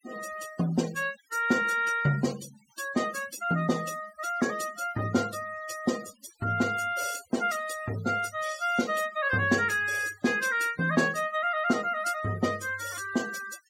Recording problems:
noise reduction artefacts; signal-to-artefact ratio 16 dB

